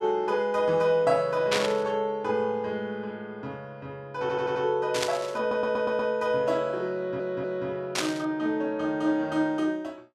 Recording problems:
burst of static; at 1.5 s, at 5 s and at 8 s; peak +4 dB vs average level
audio stuttering; at 4 s, at 5.5 s and at 7 s

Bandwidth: 12.5 kHz